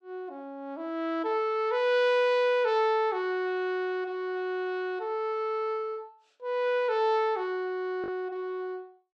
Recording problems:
packet loss; 0.5% of the sound replaced, filled with the last packet

